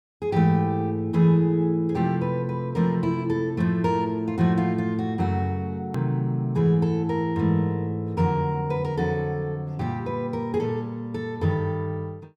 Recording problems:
click at an edit; at 6 s

